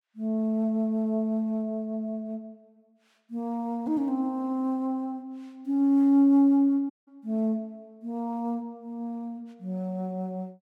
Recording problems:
audio cutting out; at 7 s

